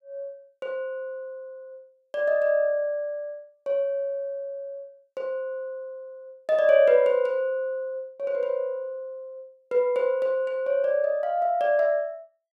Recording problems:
none

